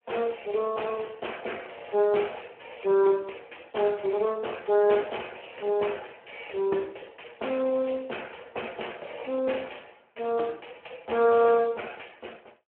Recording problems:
telephone audio; 280 Hz to 3.2 kHz, Speex

